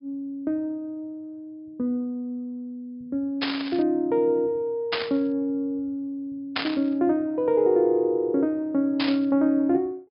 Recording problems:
treble missing; nothing above 5.5 kHz
static burst; 4 times, first at 3.5 s; peak +3 dB vs average level

